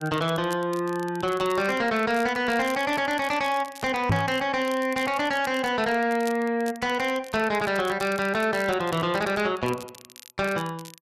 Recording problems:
distorted audio; soft clipping, signal-to-distortion ratio 11 dB
crackle; vinyl, SNR 20 dB
knock on the microphone; at 4 s; peak +5 dB vs average level

